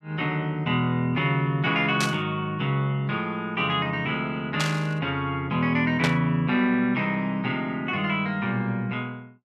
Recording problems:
static burst; at 2 s, at 4.5 s and at 6 s; peak +2 dB vs average level

